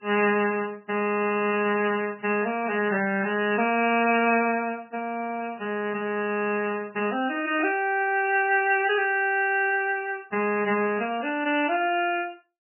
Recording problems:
lossy codec; MP3, log-spectral distance 4 dB, nothing above 2.7 kHz

